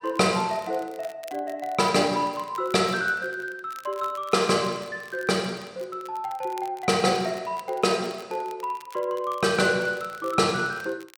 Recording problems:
crackle; vinyl, SNR 23 dB

